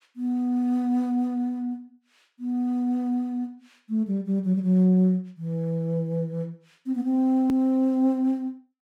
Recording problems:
click at an edit; at 7.5 s

